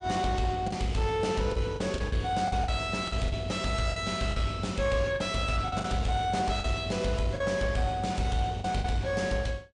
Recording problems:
lossy compression; MP3, log-spectral distance 2 dB, nothing above 8.5 kHz
distortion; soft clipping, signal-to-distortion ratio 10 dB
lost packets; 8% of the sound replaced, filled with the last packet

